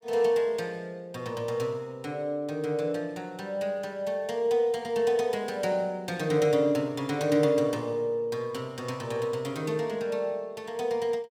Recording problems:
none

